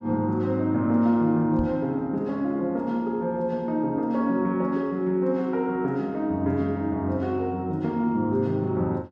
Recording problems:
microphone thump; at 1.5 s; peak -3 dB vs average level

